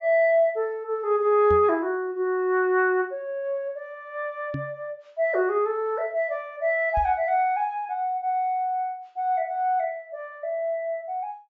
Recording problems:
treble missing; nothing above 8 kHz
knock on the microphone; at 1.5 s, at 4.5 s and at 7 s; peak -3 dB vs average level

